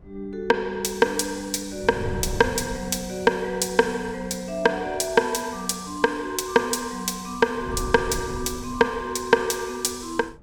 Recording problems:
wind noise; below 190 Hz, SNR 15 dB

